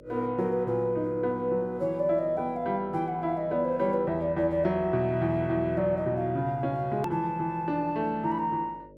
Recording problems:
mains hum; 50 Hz, harmonics up to 600 Hz, SNR 23 dB
click at an edit; at 7 s

